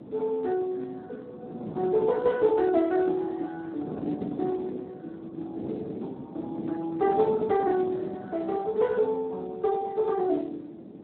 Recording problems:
telephone audio; 220 Hz to 2 kHz, Speex
wind on the microphone; below 410 Hz, SNR 11 dB

